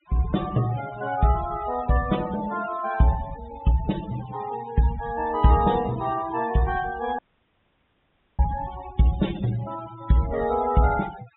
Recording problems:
low-pass filter; nothing above 3.8 kHz
denoising artefacts; signal-to-artefact ratio 16 dB
dropout; at 7 s for 1 s

